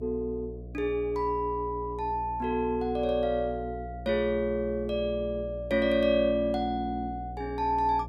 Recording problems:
electrical hum; 60 Hz, harmonics up to 720 Hz, SNR 13 dB

